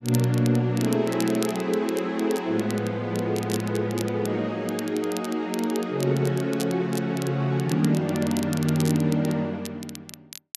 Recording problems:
crackle; vinyl, SNR 15 dB

